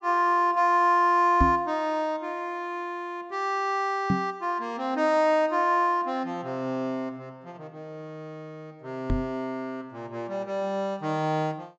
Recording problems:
treble cut off; nothing above 8 kHz
microphone thump; at 1.5 s, at 4 s and at 9 s; peak +6 dB vs average level

